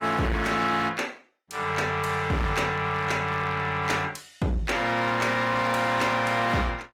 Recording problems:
lossy compression; Opus, log-spectral distance 3 dB, nothing above 18.3 kHz
distorted audio; hard clipping, uneven, signal-to-distortion ratio 11 dB

